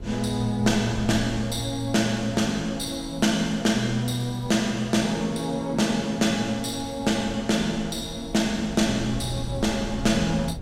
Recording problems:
wind noise; below 150 Hz, SNR 15 dB

